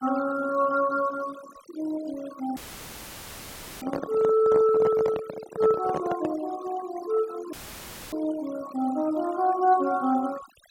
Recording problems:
denoising artefacts; signal-to-artefact ratio 18 dB
handling noise; from 2.5 to 6.5 s; peak -1 dB vs average level
audio cutting out; at 2.5 s for 1.5 s and at 7.5 s for 0.5 s; filled with static

